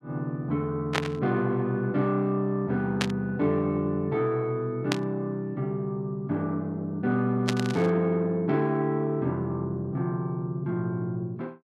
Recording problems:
static burst; 4 times, first at 1 s; peak +4 dB vs average level

